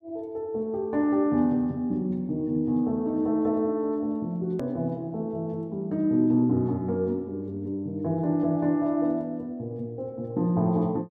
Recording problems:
hard cut with a click; at 4.5 s

